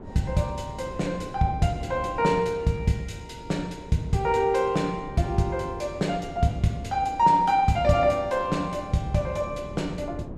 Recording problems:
wind on the microphone; below 350 Hz, SNR 16 dB

